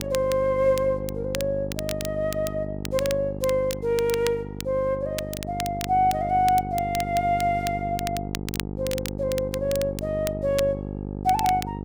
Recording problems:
hum; 50 Hz, harmonics up to 950 Hz, SNR 8 dB
crackle; vinyl, SNR 12 dB

